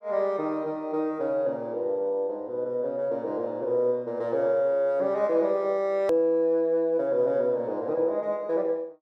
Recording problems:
edit click; at 6 s

